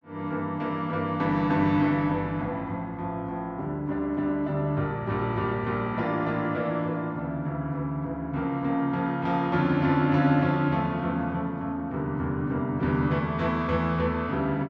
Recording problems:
none

